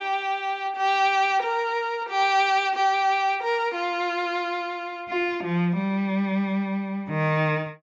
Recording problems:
low-pass filter; nothing above 8 kHz

